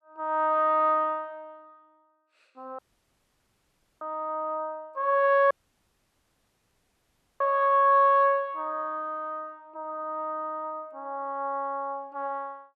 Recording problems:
dropout; at 3 s for 1 s and at 5.5 s for 2 s

